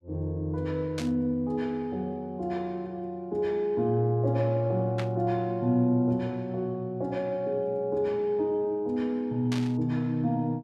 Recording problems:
static burst; at 1 s, at 5 s and at 9.5 s; peak -5 dB vs average level

